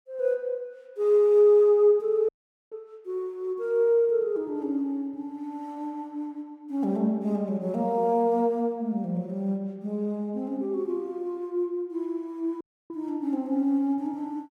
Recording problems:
dropout; at 2.5 s and at 13 s

